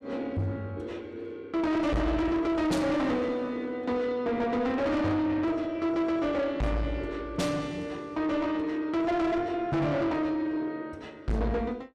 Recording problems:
distortion; soft clipping, signal-to-distortion ratio 7 dB

